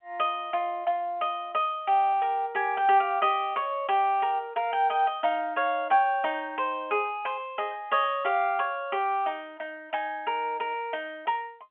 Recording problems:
phone line; 320 Hz to 3.2 kHz, G.711

